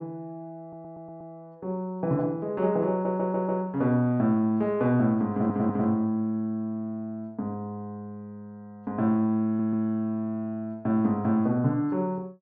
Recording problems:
audio stuttering; 4 times, first at 0.5 s

